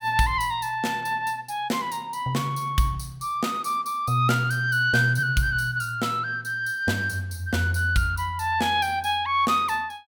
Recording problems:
none

